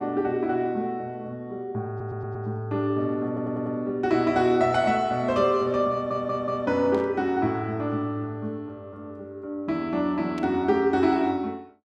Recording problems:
stutter; at 2 s, at 3.5 s and at 6 s
burst of static; at 7 s and at 10 s; peak -14 dB vs average level

